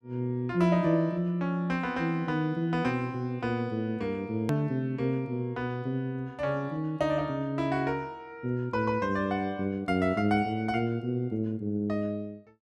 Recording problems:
click at an edit; at 4.5 s

